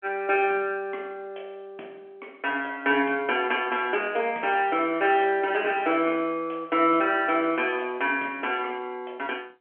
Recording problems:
telephone audio; 240 Hz to 3.3 kHz, G.711

